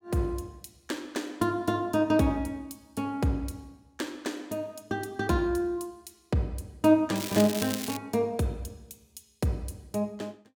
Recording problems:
crackling; at 7 s; loose cable, SNR 6 dB

